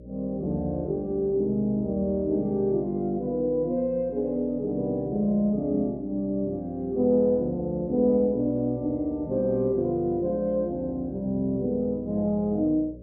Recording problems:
electrical hum; 60 Hz, harmonics up to 600 Hz, SNR 20 dB

